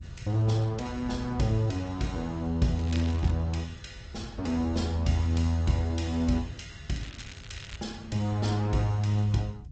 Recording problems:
lossy compression; Opus, then G.722, log-spectral distance 3 dB, nothing above 7.6 kHz
rumble; below 120 Hz, SNR 16 dB
crackling; at 3 s and at 7 s; loose cable, SNR 19 dB

